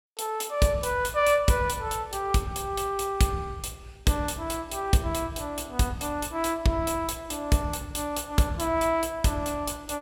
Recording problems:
none

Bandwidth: 16.5 kHz